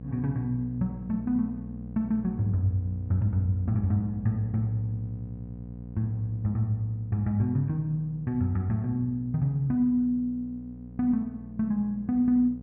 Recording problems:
electrical hum; 60 Hz, harmonics up to 720 Hz, SNR 13 dB

